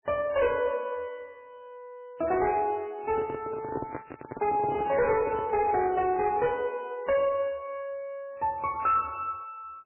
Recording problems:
codec artefacts; MP3, log-spectral distance 3 dB, nothing above 2.7 kHz
distorted audio; hard clipping, uneven, signal-to-distortion ratio 12 dB
handling noise; from 3 to 5.5 s; peak -1 dB vs average level

